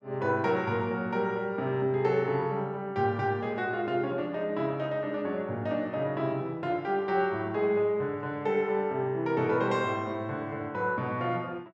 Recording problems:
none

